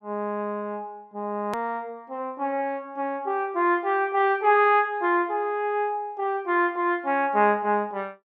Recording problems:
edit click; at 1.5 s

